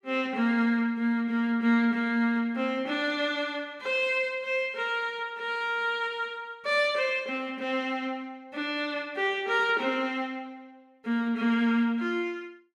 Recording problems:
none

